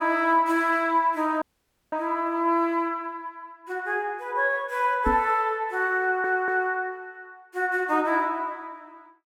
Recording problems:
audio cutting out; at 1.5 s for 0.5 s
knock on the microphone; at 5 s; peak +1 dB vs average level
stutter; at 6 s

